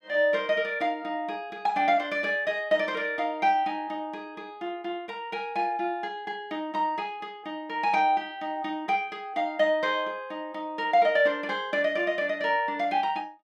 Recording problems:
none

